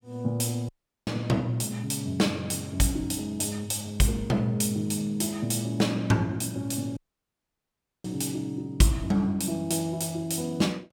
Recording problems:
dropout; at 0.5 s and at 7 s for 1 s

